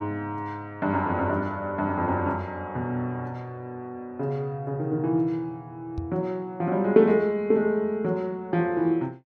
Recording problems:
knock on the microphone; at 6 s; peak -3 dB vs average level

